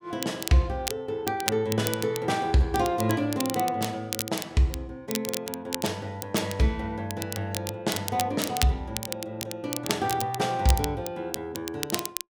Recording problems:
crackling; vinyl, SNR 7 dB

